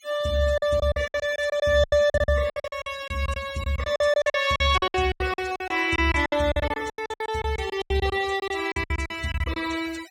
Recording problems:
denoising artefacts; signal-to-artefact ratio 18 dB
lost packets; 20% of the sound replaced, filled with silence

